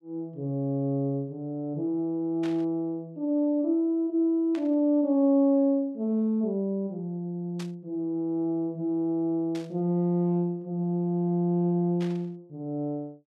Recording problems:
burst of static; 5 times, first at 2.5 s; peak -11 dB vs average level

